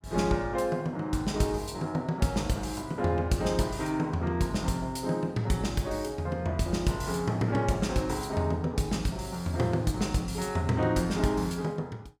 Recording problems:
none

